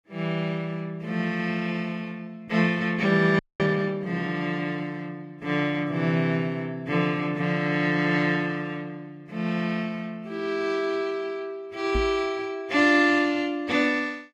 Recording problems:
lossy compression; AAC, log-spectral distance 2 dB
audio freezing; at 3.5 s
knock on the microphone; at 12 s; peak -1 dB vs average level

